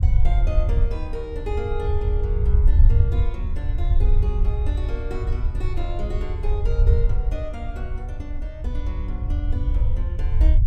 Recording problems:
low-frequency rumble; below 72 Hz, SNR -10 dB

